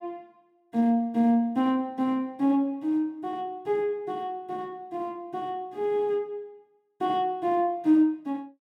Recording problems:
none

